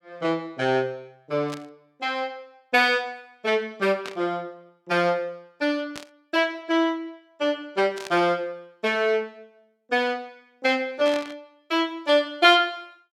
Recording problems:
burst of static; 5 times, first at 1.5 s; peak -7 dB vs average level

